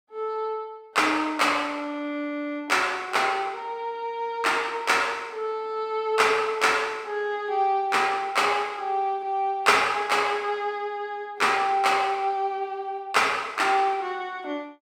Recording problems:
none

